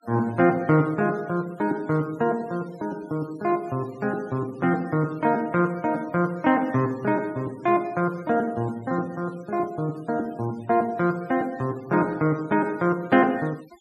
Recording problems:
denoising artefacts; signal-to-artefact ratio 25 dB

